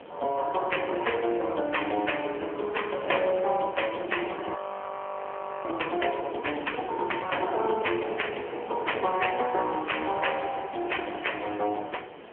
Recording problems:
phone line; 320 Hz to 3.2 kHz, AMR-NB
hiss; SNR 25 dB
wind noise; below 740 Hz, SNR 14 dB
frozen audio; at 4.5 s for 1 s

